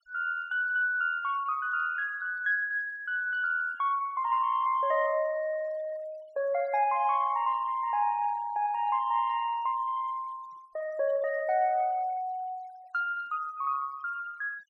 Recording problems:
noise reduction artefacts; signal-to-artefact ratio 23 dB

